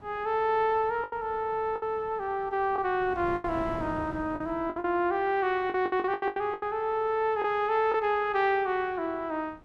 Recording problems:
wind on the microphone; below 620 Hz, SNR 19 dB
packet loss; 8% of the sound replaced, filled with the last packet

